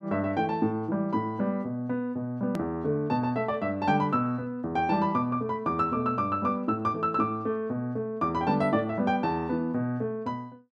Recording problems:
hard cut with a click; at 2.5 s

